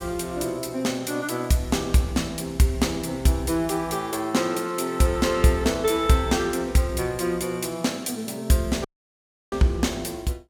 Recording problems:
dropout; at 9 s for 0.5 s

